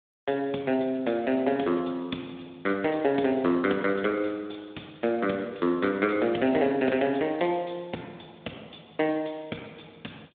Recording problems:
telephone audio; 150 Hz to 3.8 kHz, Speex

